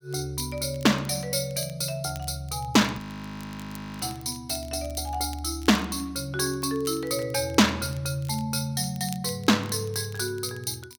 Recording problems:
crackling; vinyl, SNR 22 dB
frozen audio; at 3 s for 1 s

